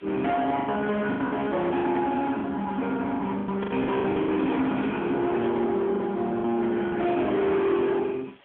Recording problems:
phone line; 170 Hz to 2.5 kHz, AMR-NB
distorted audio; soft clipping, signal-to-distortion ratio 7 dB
background hiss; SNR 29 dB
packet loss; 10% of the sound replaced, filled with the last packet
burst of static; at 1.5 s, at 3.5 s and at 5.5 s; peak -15 dB vs average level

